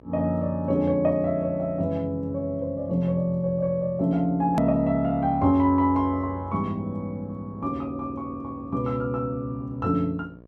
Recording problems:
hum; 60 Hz, harmonics up to 1.2 kHz, SNR 25 dB
edit click; at 4.5 s

